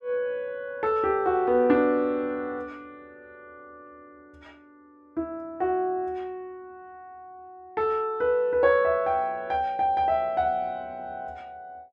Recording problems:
none

